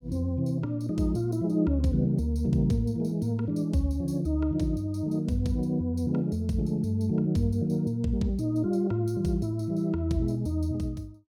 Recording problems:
none

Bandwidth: 17 kHz